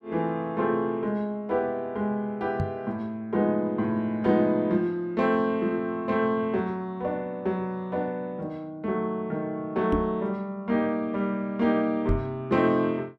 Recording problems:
microphone bump; at 2.5 s, at 10 s and at 12 s; peak +4 dB vs average level

